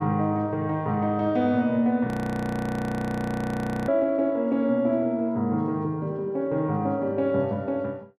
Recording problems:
audio freezing; at 2 s for 2 s

